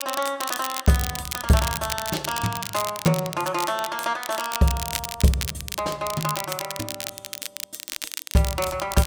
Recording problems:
crackling; vinyl, SNR 6 dB

